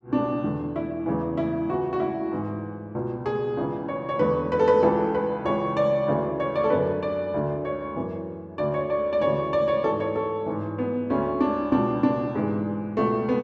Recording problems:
none

